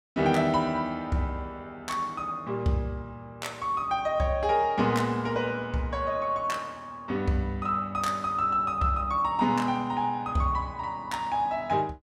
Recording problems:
none

